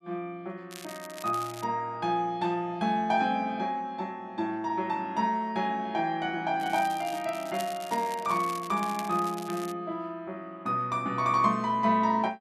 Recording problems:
crackle; at 0.5 s and from 6.5 to 9.5 s; loose cable, SNR 16 dB

